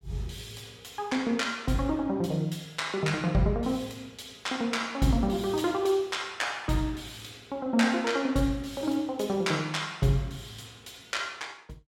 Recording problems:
none

